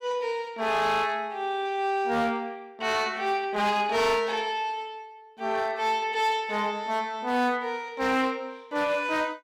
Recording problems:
distorted audio; hard clipping, uneven, signal-to-distortion ratio 12 dB

